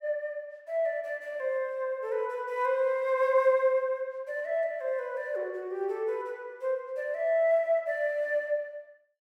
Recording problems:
none

